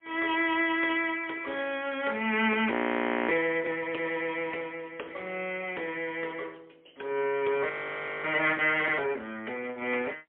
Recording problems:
phone line; 300 Hz to 3.3 kHz, AMR-NB, then MP3
frozen audio; at 2.5 s for 0.5 s and at 7.5 s for 0.5 s

